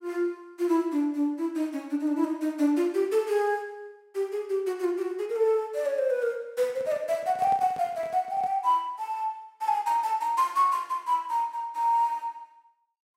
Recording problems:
handling noise; from 6.5 to 8.5 s; peak -11 dB vs average level

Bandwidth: 16 kHz